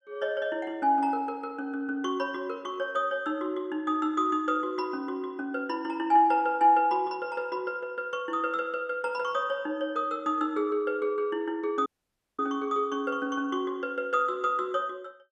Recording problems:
dropout; at 12 s for 0.5 s

